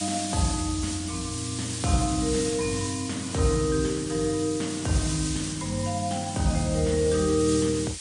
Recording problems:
codec artefacts; MP3, log-spectral distance 16 dB, nothing above 9.5 kHz
background hiss; slope +5 dB per octave, SNR 7 dB

